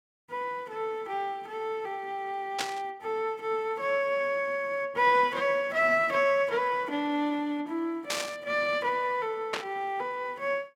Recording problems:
static burst; at 2.5 s, at 8 s and at 9.5 s; peak +2 dB vs average level

